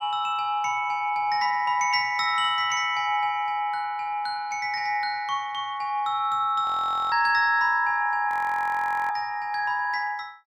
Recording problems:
audio freezing; at 6.5 s and at 8.5 s for 1 s

